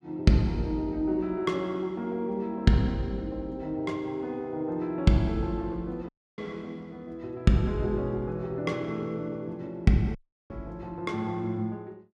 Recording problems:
audio cutting out; at 6 s and at 10 s

